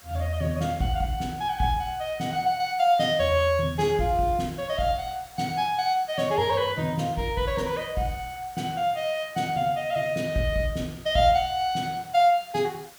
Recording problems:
hiss; slope -1 dB per octave, SNR 22 dB

